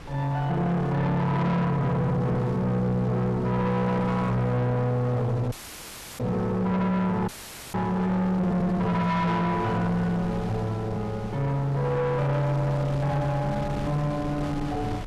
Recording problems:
distorted audio; soft clipping, signal-to-distortion ratio 8 dB
wind on the microphone; below 590 Hz, SNR 13 dB
audio cutting out; at 5.5 s for 0.5 s and at 7.5 s

